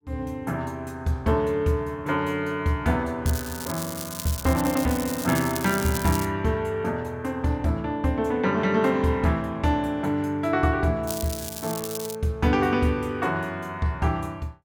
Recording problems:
crackling; from 3.5 to 6.5 s and from 11 to 12 s; loose cable, SNR 9 dB

